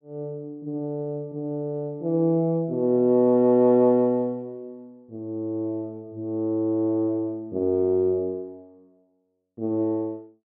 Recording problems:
none

